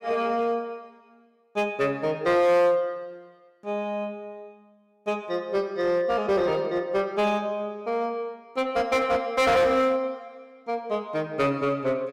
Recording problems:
distorted audio; hard clipping, uneven, signal-to-distortion ratio 10 dB

